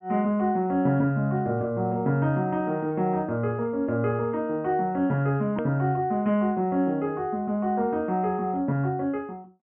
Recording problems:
low-pass filter; nothing above 3.3 kHz
hard cut with a click; at 5.5 s

